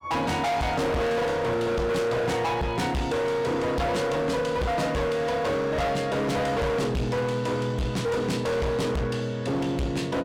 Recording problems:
distorted audio; hard clipping, signal-to-distortion ratio 6 dB

